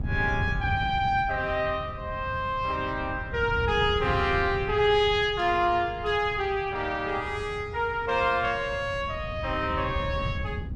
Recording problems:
wind noise; below 140 Hz, SNR 10 dB

